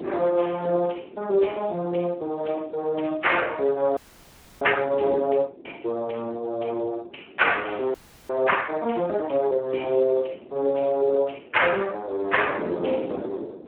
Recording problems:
telephone audio; 280 Hz to 3.8 kHz, Speex
wind noise; below 450 Hz, SNR 16 dB
audio freezing; at 4 s for 0.5 s and at 8 s

